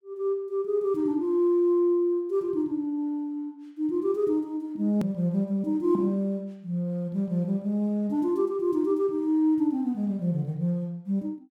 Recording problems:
click at an edit; at 5 s

